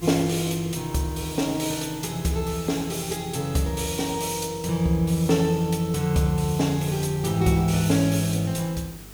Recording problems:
electrical hum; 50 Hz, harmonics up to 450 Hz, SNR 24 dB
hiss; slope -1 dB per octave, SNR 20 dB

